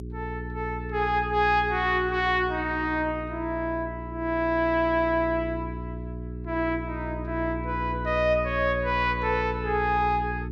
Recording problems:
hum; 60 Hz, harmonics up to 420 Hz, SNR 9 dB

